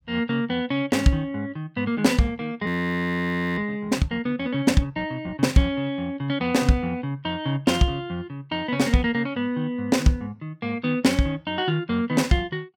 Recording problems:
frozen audio; at 2.5 s for 1 s

